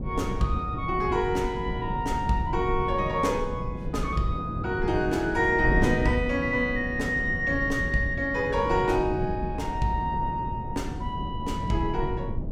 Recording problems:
wind on the microphone; below 200 Hz, SNR 6 dB

